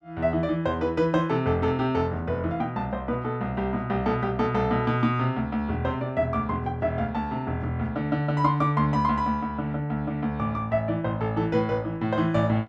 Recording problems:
none

